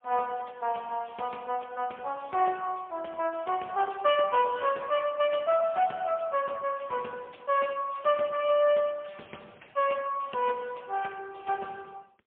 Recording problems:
phone line; 260 Hz to 3.3 kHz, AMR-NB, then MP3

